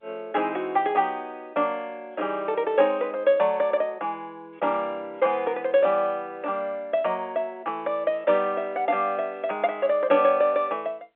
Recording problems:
telephone audio; 240 Hz to 3.4 kHz, G.711

